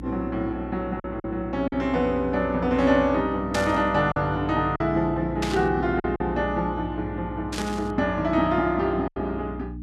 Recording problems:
hum; 60 Hz, harmonics up to 300 Hz, SNR 11 dB
packet loss; 4% of the sound replaced, filled with silence
static burst; at 3.5 s, at 5.5 s and at 7.5 s; peak -2 dB vs average level

